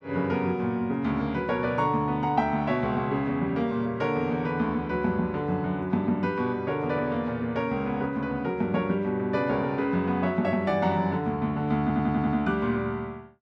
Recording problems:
audio stuttering; at 12 s

